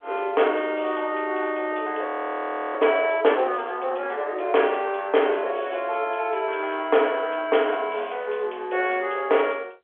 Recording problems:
phone line; 340 Hz to 3.4 kHz, G.711
frozen audio; at 2 s for 0.5 s

